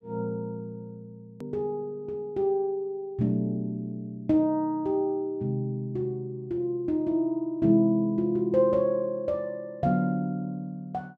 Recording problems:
click at an edit; at 1.5 s

